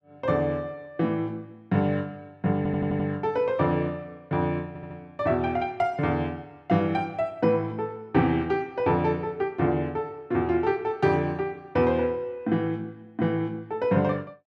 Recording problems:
stutter; at 2.5 s and at 4.5 s

